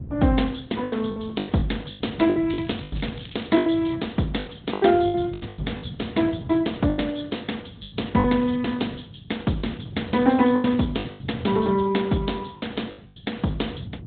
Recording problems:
treble cut off; nothing above 3.9 kHz
lossy compression; Opus, log-spectral distance 4 dB
wind on the microphone; below 170 Hz, SNR 13 dB
lost packets; 12% of the sound replaced, filled with the last packet
crackle; from 2.5 to 3.5 s; loose cable, SNR 19 dB

